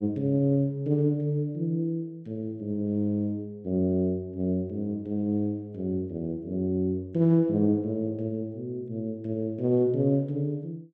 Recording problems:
none

